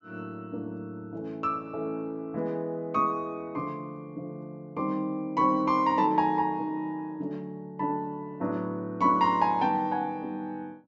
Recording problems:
treble missing; nothing above 8 kHz

